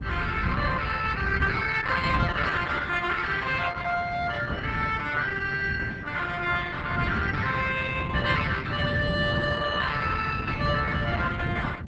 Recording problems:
lossy codec; Opus, log-spectral distance 4 dB, nothing above 8 kHz
wind noise; below 170 Hz, SNR 4 dB

